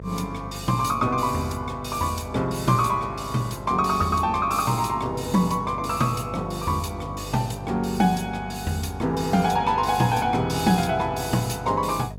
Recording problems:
hum; 50 Hz, harmonics up to 650 Hz, SNR 15 dB

